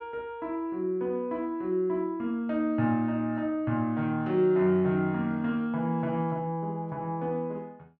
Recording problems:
none

